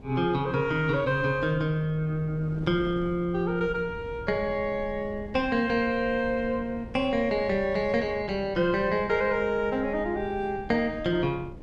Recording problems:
wind noise; below 240 Hz, SNR 17 dB

